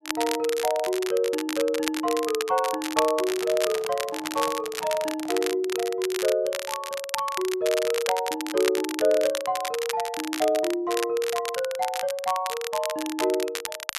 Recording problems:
crackling; vinyl, SNR 7 dB
microphone handling noise; from 3 to 5.5 s; peak -9 dB vs average level

